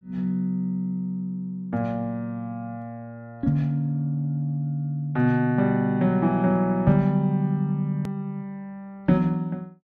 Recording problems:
hard cut with a click; at 8 s

